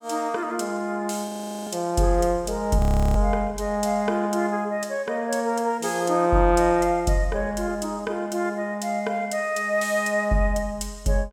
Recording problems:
audio freezing; at 1.5 s and at 3 s

